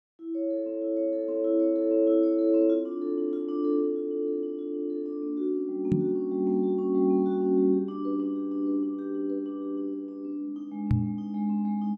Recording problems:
microphone bump; at 6 s and at 11 s; peak +5 dB vs average level

